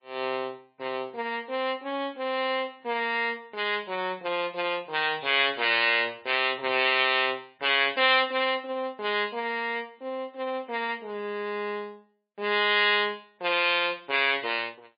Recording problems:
lossy codec; MP3, log-spectral distance 2 dB, nothing above 4.4 kHz

